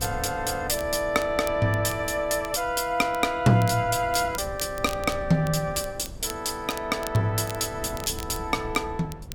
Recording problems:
wind on the microphone; below 190 Hz, SNR 16 dB
crackling; vinyl, SNR 18 dB

